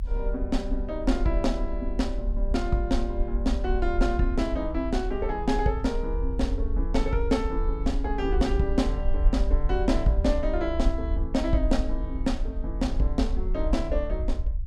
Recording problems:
rumble; below 52 Hz, SNR 2 dB

